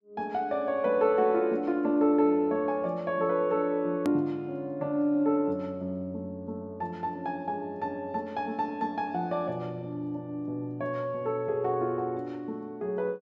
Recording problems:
edit click; at 4 s

